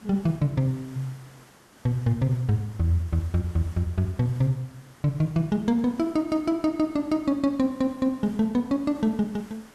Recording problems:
background hiss; slope -4 dB per octave, SNR 25 dB

